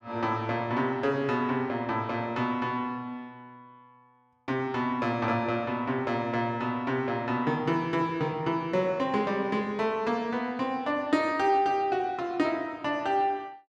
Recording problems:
none

